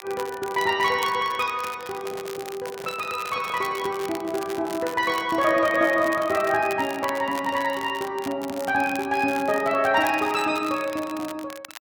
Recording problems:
crackle; vinyl, SNR 16 dB
handling noise; from 2 to 5.5 s; peak -11 dB vs average level

